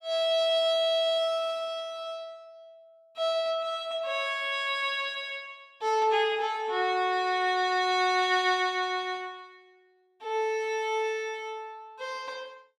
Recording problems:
none

